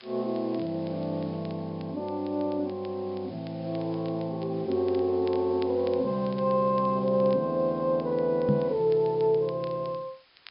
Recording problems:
low-pass filter; nothing above 5.5 kHz
hiss; SNR 27 dB
crackling; vinyl, SNR 27 dB
knock on the microphone; at 8.5 s; peak +6 dB vs average level

